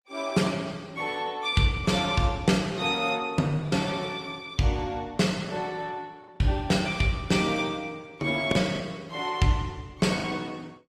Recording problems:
lossy codec; Opus, log-spectral distance 3 dB
lost packets; 1.7% of the sound replaced, filled with the last packet

